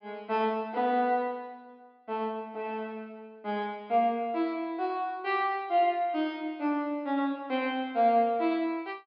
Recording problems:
treble missing; nothing above 5.5 kHz

